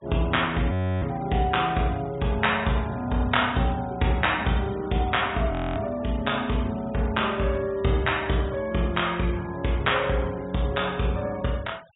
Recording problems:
treble missing; nothing above 4 kHz
noise reduction artefacts; signal-to-artefact ratio 24 dB
frozen audio; at 0.5 s and at 5.5 s

